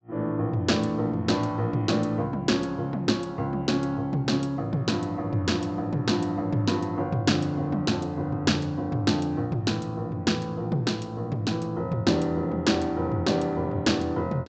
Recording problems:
treble cut off; nothing above 8 kHz

